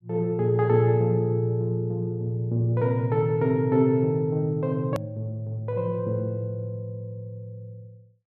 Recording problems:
click at an edit; at 5 s

